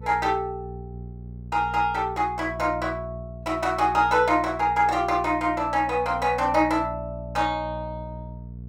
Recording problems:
hum; 60 Hz, harmonics up to 480 Hz, SNR 15 dB

